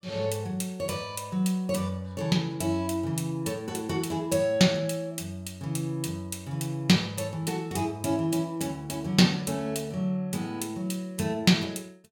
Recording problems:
none

